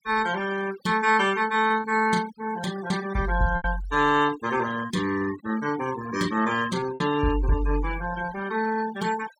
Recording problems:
noise reduction artefacts; signal-to-artefact ratio 14 dB
packet loss; 3% of the sound replaced, filled with repeated pitch periods

